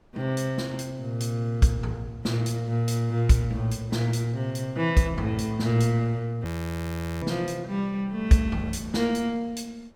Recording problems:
wind on the microphone; below 580 Hz, SNR 26 dB
frozen audio; at 6.5 s for 1 s

